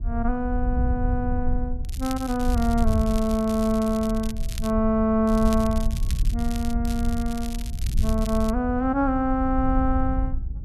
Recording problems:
wind noise; below 70 Hz, SNR 4 dB
crackling; from 2 to 4.5 s, from 5.5 to 7 s and from 7 to 8.5 s; loose cable, SNR 16 dB

